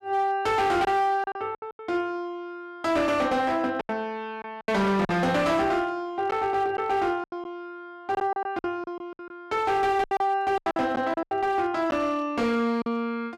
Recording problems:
distorted audio; hard clipping, signal-to-distortion ratio 11 dB
lost packets; 9% of the sound replaced, filled with silence

